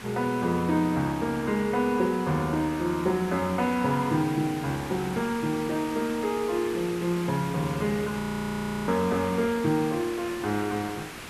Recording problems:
background hiss; SNR 12 dB
audio freezing; at 8 s for 0.5 s

